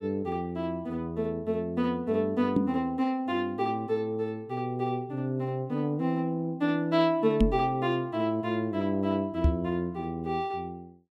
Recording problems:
microphone bump; at 2.5 s, at 7.5 s and at 9.5 s; peak +8 dB vs average level

